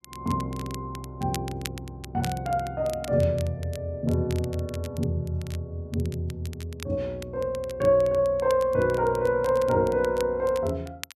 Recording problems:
crackling; vinyl, SNR 18 dB

